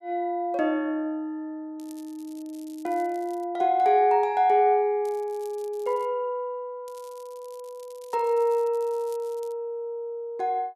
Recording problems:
crackle; from 2 to 3.5 s, from 5 to 6 s and from 7 to 9.5 s; loose cable, SNR 28 dB

